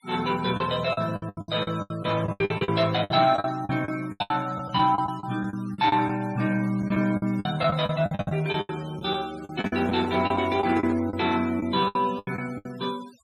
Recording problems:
noise reduction artefacts; signal-to-artefact ratio 20 dB
lost packets; 17% of the sound replaced, filled with the last packet
handling noise; from 9.5 to 11 s; peak -3 dB vs average level

